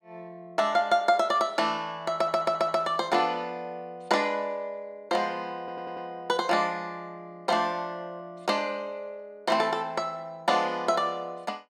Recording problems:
stutter; at 2 s and at 5.5 s

